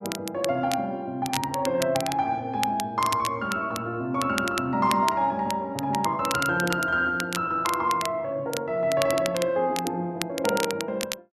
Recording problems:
crackling; vinyl, SNR 9 dB

